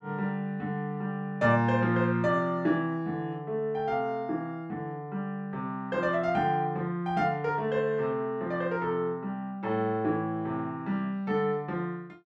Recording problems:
none

